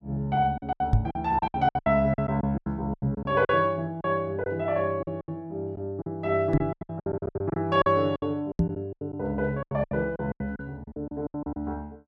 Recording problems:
packet loss; 18% of the sound replaced, filled with silence
knock on the microphone; 4 times, first at 1 s; peak +9 dB vs average level

